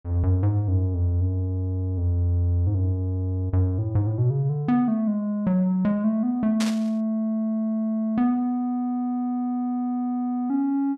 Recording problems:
burst of static; at 6.5 s; peak -2 dB vs average level

